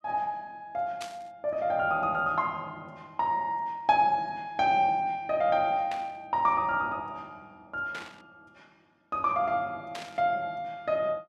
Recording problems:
static burst; 4 times, first at 1 s; peak -7 dB vs average level

